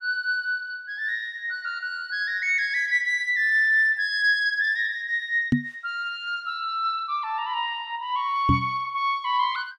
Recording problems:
microphone thump; at 5.5 s and at 8.5 s; peak +7 dB vs average level

